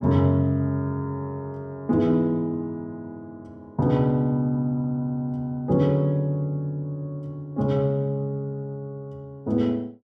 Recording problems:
none

